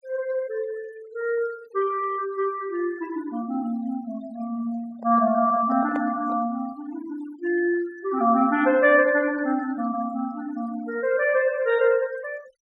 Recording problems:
noise reduction artefacts; signal-to-artefact ratio 23 dB
microphone handling noise; from 5 to 6.5 s; peak -5 dB vs average level

